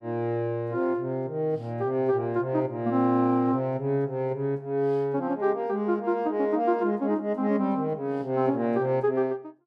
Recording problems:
none

